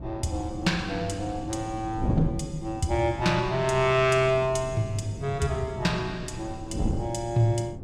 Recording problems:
wind noise; below 260 Hz, SNR 9 dB

